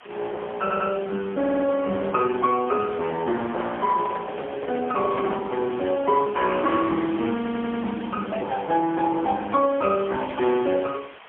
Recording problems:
telephone audio; 260 Hz to 3.4 kHz, AMR-NB, then MP3
hiss; SNR 20 dB
stutter; at 0.5 s, at 1.5 s and at 7.5 s
handling noise; from 3.5 to 5.5 s; peak -6 dB vs average level

